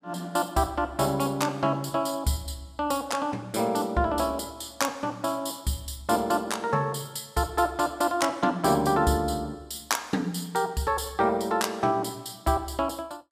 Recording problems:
none

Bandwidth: 15 kHz